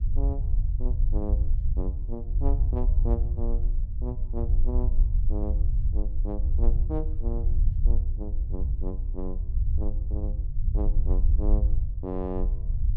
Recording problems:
rumble; below 60 Hz, SNR -10 dB

